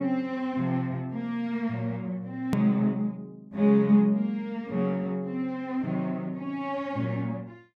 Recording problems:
click at an edit; at 2.5 s

